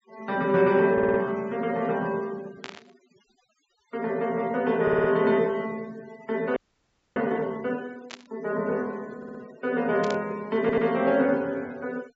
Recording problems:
treble cut off; nothing above 7.6 kHz
denoising artefacts; signal-to-artefact ratio 25 dB
stutter; 4 times, first at 1 s
burst of static; at 2.5 s, at 8 s and at 10 s; peak -6 dB vs average level
audio freezing; at 6.5 s for 0.5 s

